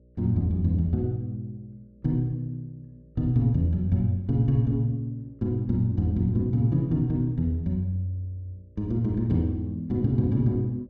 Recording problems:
hum; 60 Hz, harmonics up to 600 Hz, SNR 29 dB

